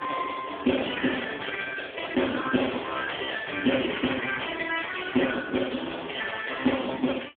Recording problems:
telephone audio; 220 Hz to 3.4 kHz, AMR-NB

